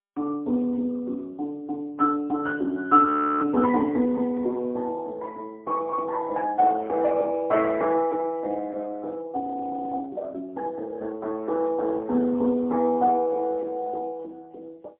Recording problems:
phone line; 220 Hz to 2.6 kHz, AMR-NB, then MP3
frozen audio; at 3 s and at 9.5 s for 0.5 s

